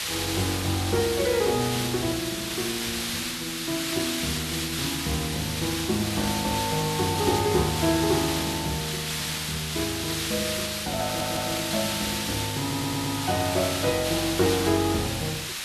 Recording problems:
hiss; SNR 1 dB
stutter; at 11 s and at 13 s

